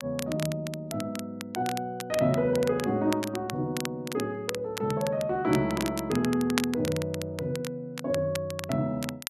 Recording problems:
crackle; vinyl, SNR 10 dB

